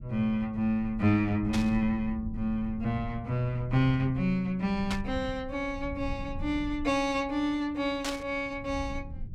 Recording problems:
rumble; below 110 Hz, SNR 13 dB
burst of static; at 1.5 s, at 5 s and at 8 s; peak -1 dB vs average level

